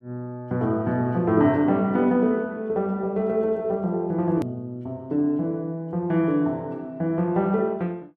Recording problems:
click at an edit; at 4.5 s

